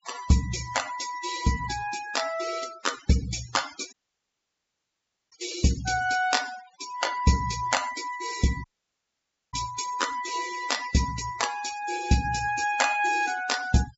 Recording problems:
treble missing; nothing above 8 kHz
denoising artefacts; signal-to-artefact ratio 13 dB
dropout; at 4 s for 1.5 s and at 8.5 s for 1 s

